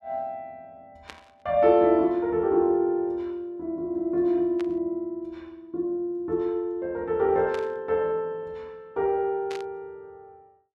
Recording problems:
burst of static; 4 times, first at 1 s; peak -10 dB vs average level

